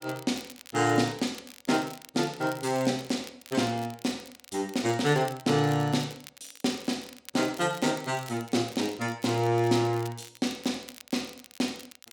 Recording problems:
crackling; vinyl, SNR 19 dB

